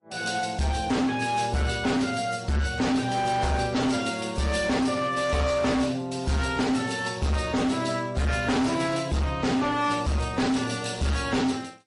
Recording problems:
codec artefacts; MP3, then AAC, log-spectral distance 4 dB, nothing above 10.4 kHz
distorted audio; hard clipping, signal-to-distortion ratio 8 dB

